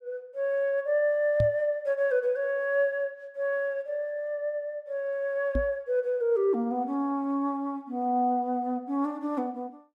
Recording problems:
microphone bump; at 1.5 s and at 5.5 s; peak +2 dB vs average level

